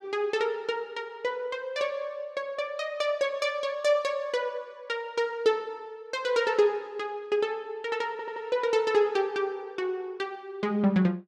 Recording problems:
stutter; at 8 s

